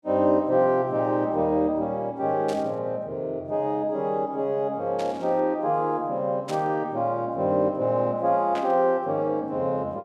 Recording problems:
burst of static; 4 times, first at 2.5 s; peak -9 dB vs average level

